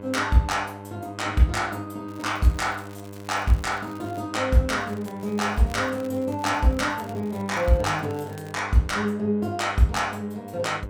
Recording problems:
electrical hum; 50 Hz, harmonics up to 2.1 kHz, SNR 15 dB
crackling; from 2 to 4 s and from 5 to 8.5 s; loose cable, SNR 25 dB

